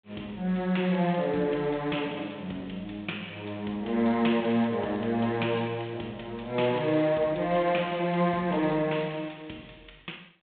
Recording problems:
phone line; 240 Hz to 3.6 kHz, G.726

